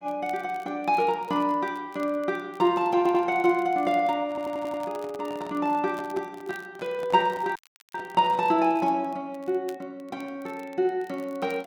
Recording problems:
crackle; vinyl, SNR 29 dB
audio stuttering; at 3 s and at 4.5 s
handling noise; from 4 to 8.5 s; peak -10 dB vs average level
audio cutting out; at 7.5 s

